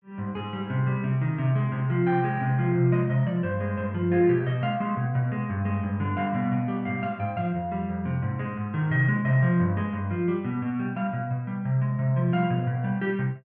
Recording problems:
none

